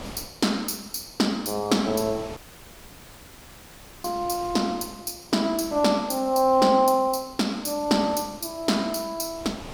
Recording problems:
wind noise; below 2 kHz, SNR 21 dB
dropout; at 2.5 s for 1.5 s

